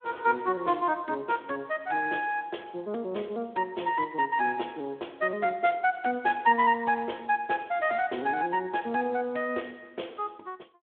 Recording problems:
phone line; 260 Hz to 3.4 kHz, Speex

